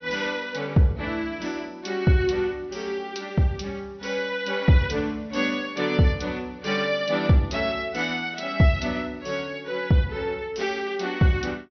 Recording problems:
treble missing; nothing above 6 kHz

